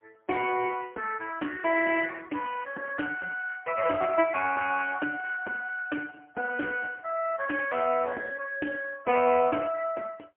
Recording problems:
phone line; 260 Hz to 2.9 kHz, AMR-NB, then MP3

